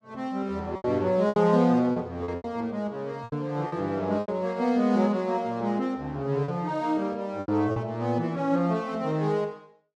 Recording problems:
lost packets; 7% of the sound replaced, filled with repeated pitch periods

